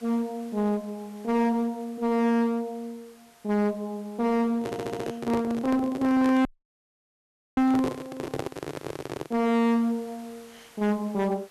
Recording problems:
distortion; hard clipping, uneven, signal-to-distortion ratio 5 dB
hiss; slope -2 dB per octave, SNR 27 dB
microphone handling noise; from 4.5 to 9.5 s; peak +3 dB vs average level
stutter; at 4.5 s
audio cutting out; at 6.5 s for 1 s

